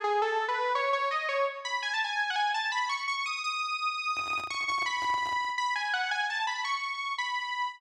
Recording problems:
handling noise; from 4 to 5.5 s; peak -11 dB vs average level

